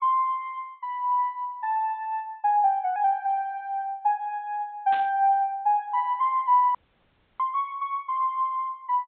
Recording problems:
treble cut off; nothing above 4 kHz
burst of static; at 5 s; peak -10 dB vs average level
audio cutting out; at 7 s for 0.5 s

